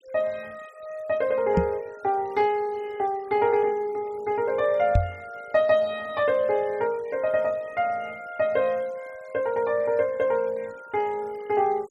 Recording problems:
denoising artefacts; signal-to-artefact ratio 27 dB
microphone thump; at 1.5 s and at 5 s; peak +6 dB vs average level

